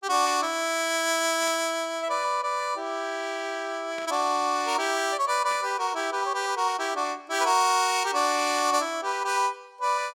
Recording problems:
burst of static; 4 times, first at 1.5 s; peak -12 dB vs average level

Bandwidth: 16.5 kHz